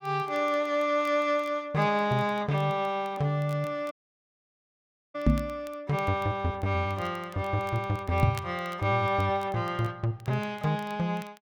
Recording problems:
crackling; vinyl, SNR 26 dB
dropout; at 4 s for 1 s
microphone bump; at 5.5 s and at 8 s; peak +9 dB vs average level

